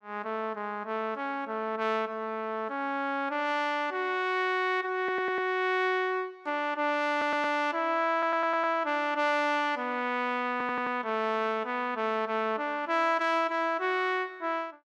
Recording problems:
stutter; 4 times, first at 5 s

